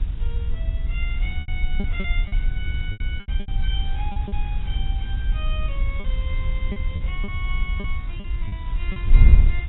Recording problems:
lossy compression; AAC, log-spectral distance 2 dB, nothing above 3.2 kHz
background hiss; SNR 15 dB
wind on the microphone; below 62 Hz, SNR -11 dB
lost packets; 9% of the sound replaced, filled with repeated pitch periods

